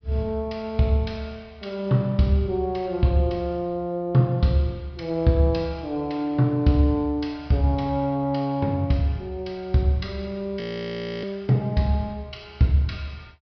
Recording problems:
treble missing; nothing above 5.5 kHz
frozen audio; at 11 s for 0.5 s

